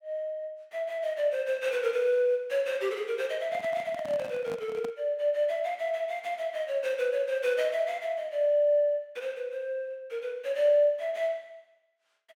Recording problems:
microphone handling noise; from 3.5 to 5 s; peak -9 dB vs average level

